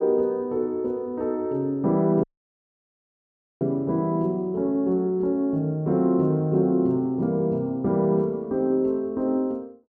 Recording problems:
audio cutting out; at 2 s for 1.5 s

